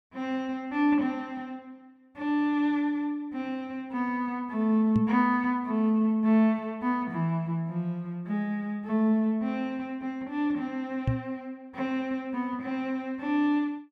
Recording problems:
microphone thump; at 5 s and at 11 s; peak +5 dB vs average level

